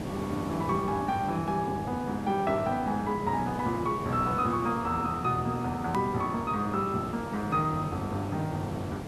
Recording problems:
hiss; SNR 8 dB
edit click; at 6 s

